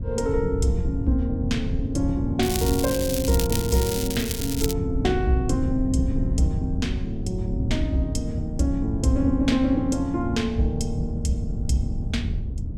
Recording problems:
wind on the microphone; below 110 Hz, SNR 4 dB
crackle; from 2.5 to 4.5 s; loose cable, SNR 5 dB

